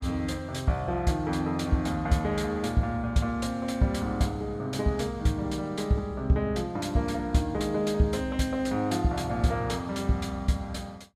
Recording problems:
none

